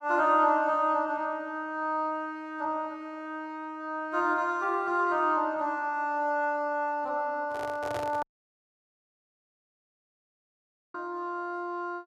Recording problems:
microphone handling noise; at 7.5 s; peak -4 dB vs average level
audio cutting out; at 8 s for 2.5 s

